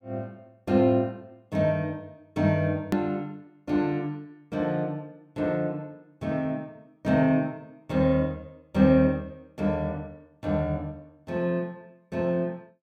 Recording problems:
hard cut with a click; at 3 s

